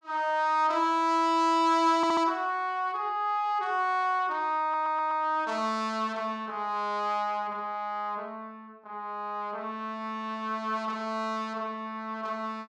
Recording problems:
audio stuttering; at 2 s and at 4.5 s

